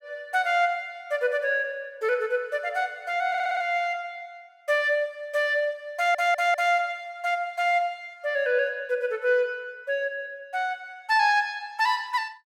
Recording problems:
audio stuttering; at 3.5 s and at 6 s

